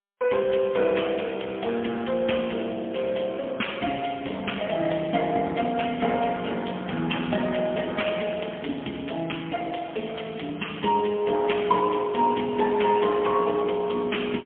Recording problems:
telephone audio; 190 Hz to 3.4 kHz, AMR-NB, then MP3

